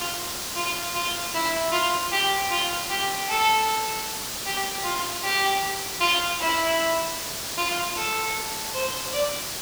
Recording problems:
hiss; slope 0 dB per octave, SNR 4 dB

